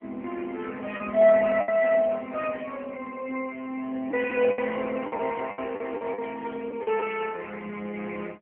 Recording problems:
telephone audio; 240 Hz to 3.1 kHz, AMR-NB
lost packets; 6% of the sound replaced, filled with the last packet

